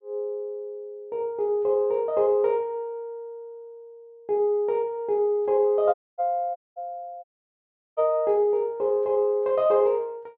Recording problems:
audio cutting out; at 6 s, at 6.5 s and at 7 s for 0.5 s

